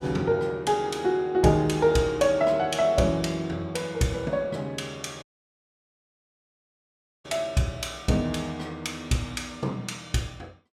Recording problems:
dropout; at 5 s for 2 s

